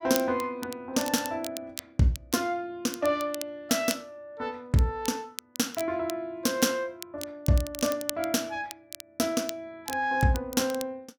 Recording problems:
crackling; vinyl, SNR 12 dB

